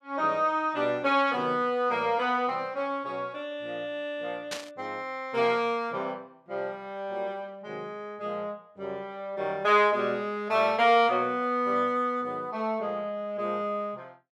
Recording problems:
burst of static; at 4.5 s; peak -2 dB vs average level

